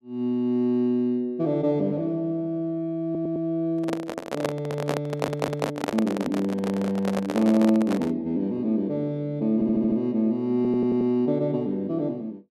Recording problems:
audio stuttering; 4 times, first at 3 s
microphone handling noise; from 4 to 8 s; peak +3 dB vs average level

